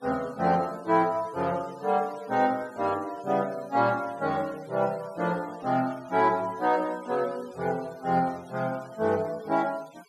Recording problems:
denoising artefacts; signal-to-artefact ratio 22 dB

